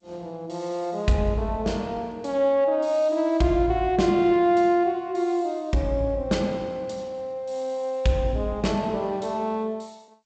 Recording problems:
codec artefacts; G.722, log-spectral distance 2 dB, nothing above 7.8 kHz

